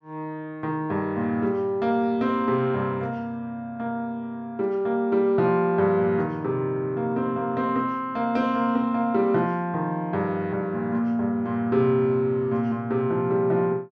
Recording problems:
none

